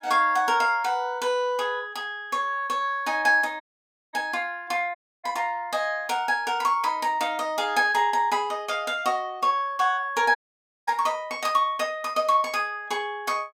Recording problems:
audio cutting out; at 3.5 s for 0.5 s, at 5 s and at 10 s for 0.5 s

